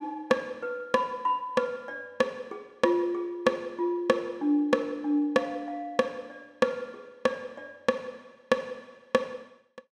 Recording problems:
none

